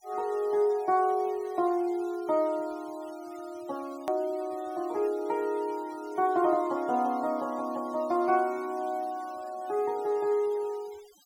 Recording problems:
noise reduction artefacts; signal-to-artefact ratio 24 dB
click at an edit; at 4 s

